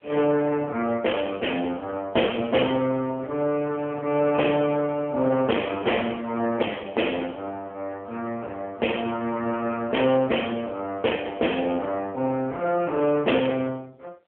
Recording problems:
phone line; 260 Hz to 3.1 kHz, AMR-NB
distorted audio; hard clipping, signal-to-distortion ratio 17 dB

